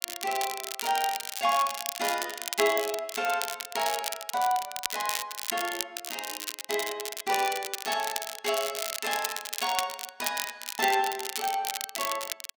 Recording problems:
crackling; vinyl, SNR 3 dB

